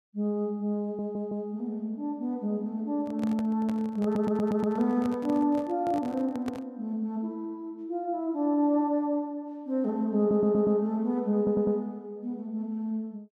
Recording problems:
audio stuttering; 4 times, first at 1 s
handling noise; from 3 to 6.5 s; peak -6 dB vs average level

